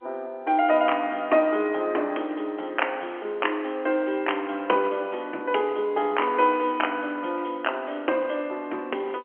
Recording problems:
phone line; 260 Hz to 3.1 kHz, G.711

